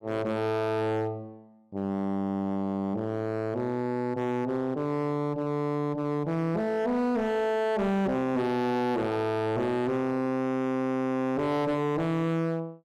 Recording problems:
distortion; hard clipping, signal-to-distortion ratio 7 dB

